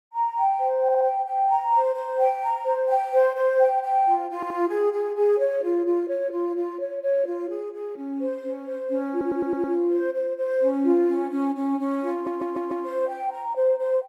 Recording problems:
stutter; 4 times, first at 1 s

